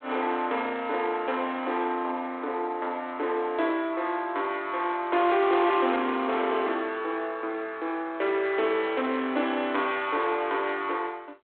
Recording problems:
phone line; 280 Hz to 3.6 kHz, G.726
distorted audio; soft clipping, signal-to-distortion ratio 12 dB

